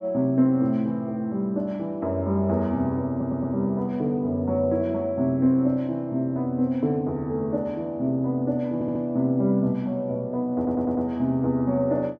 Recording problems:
stutter; at 3 s, at 8.5 s and at 11 s

